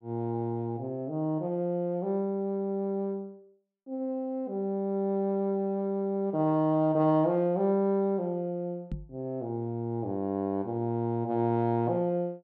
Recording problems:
microphone thump; at 9 s; peak -3 dB vs average level

